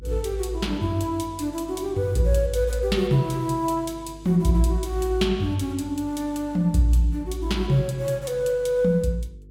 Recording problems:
electrical hum; 50 Hz, harmonics up to 500 Hz, SNR 21 dB

